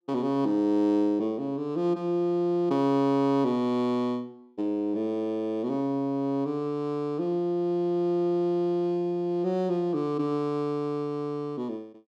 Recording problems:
none

